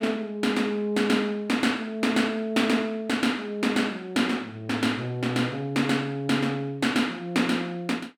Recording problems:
none

